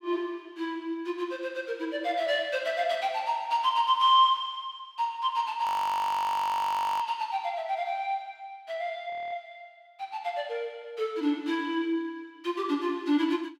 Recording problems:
audio freezing; at 5.5 s for 1.5 s and at 9 s

